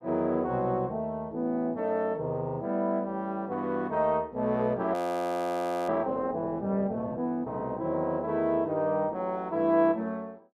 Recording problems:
frozen audio; at 5 s for 1 s

